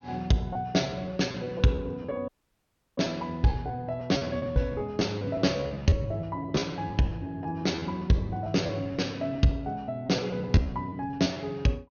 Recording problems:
treble missing; nothing above 6.5 kHz
lost packets; 12% of the sound replaced, filled with repeated pitch periods
audio cutting out; at 2.5 s for 0.5 s

